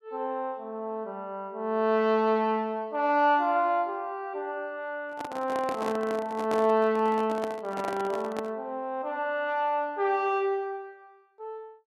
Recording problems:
microphone handling noise; from 5 to 8.5 s; peak -3 dB vs average level

